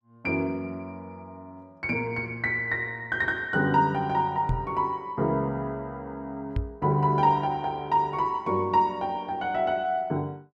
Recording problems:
microphone bump; at 4.5 s and at 6.5 s; peak +2 dB vs average level

